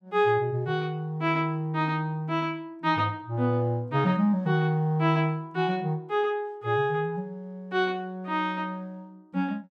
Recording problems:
none

